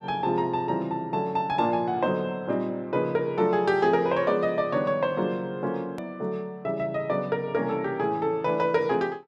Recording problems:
hard cut with a click; at 6 s

